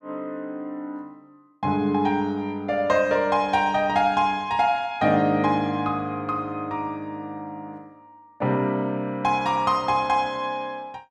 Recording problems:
none

